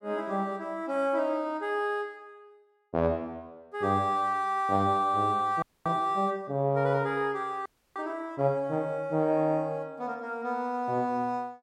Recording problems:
frozen audio; at 5.5 s and at 7.5 s

